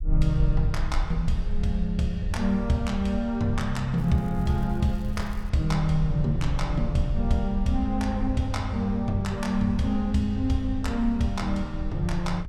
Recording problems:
rumble; below 56 Hz, SNR 7 dB
crackle; from 4 to 5.5 s; loose cable, SNR 29 dB

